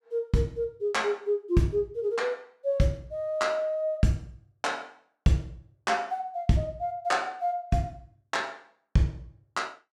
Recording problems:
none

